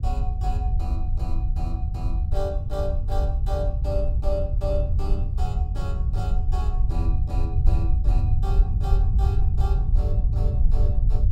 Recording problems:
low-frequency rumble; below 78 Hz, SNR -10 dB

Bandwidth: 16 kHz